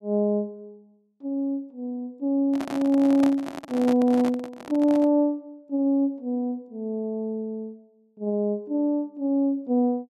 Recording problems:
microphone handling noise; from 2.5 to 5 s; peak -3 dB vs average level

